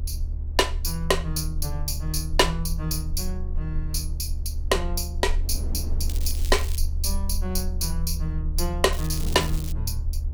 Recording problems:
hum; 60 Hz, harmonics up to 840 Hz, SNR 19 dB
low-frequency rumble; below 74 Hz, strongest tone 26 Hz, SNR 3 dB
wind noise; below 290 Hz, SNR 17 dB
crackle; at 6 s and at 9 s; loose cable, SNR 12 dB

